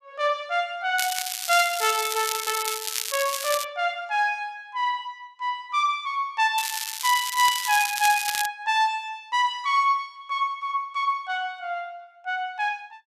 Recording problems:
crackling; from 1 to 3.5 s and from 6.5 to 8.5 s; loose cable, SNR 4 dB

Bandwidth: 14.5 kHz